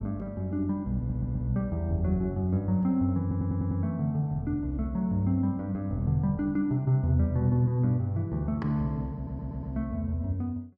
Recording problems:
audio stuttering; at 1 s, at 3 s and at 9 s

